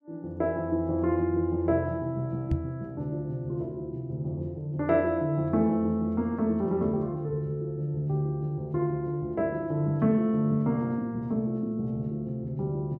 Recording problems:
knock on the microphone; at 2.5 s; peak +5 dB vs average level

